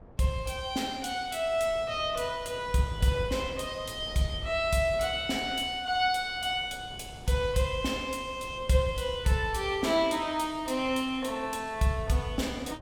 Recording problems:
wind on the microphone; below 430 Hz, SNR 19 dB

